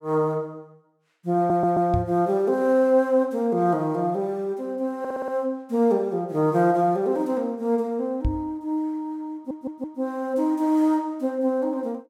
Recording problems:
audio stuttering; at 1.5 s, at 5 s and at 9.5 s
knock on the microphone; at 2 s and at 8.5 s; peak +2 dB vs average level

